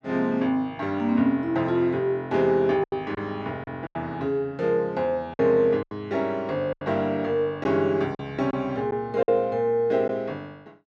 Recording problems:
lost packets; 5% of the sound replaced, filled with silence

